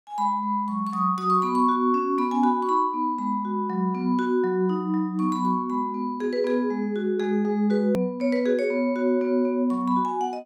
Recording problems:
edit click; at 8 s

